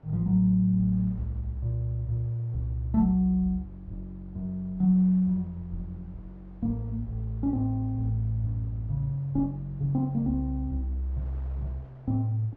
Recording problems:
wind noise; below 660 Hz, SNR 29 dB

